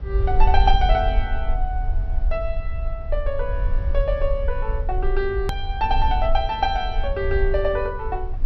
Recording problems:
treble cut off; nothing above 5.9 kHz
rumble; below 54 Hz, SNR 1 dB
edit click; at 5.5 s

